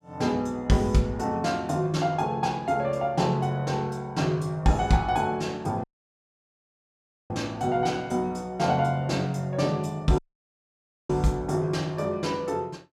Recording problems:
audio cutting out; at 6 s for 1.5 s and at 10 s for 1 s

